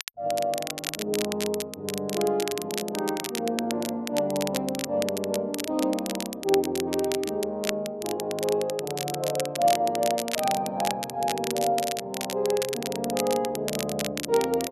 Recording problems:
crackle; vinyl, SNR 6 dB

